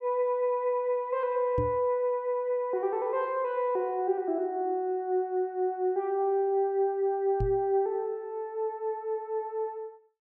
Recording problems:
microphone bump; at 1.5 s and at 7.5 s; peak +1 dB vs average level

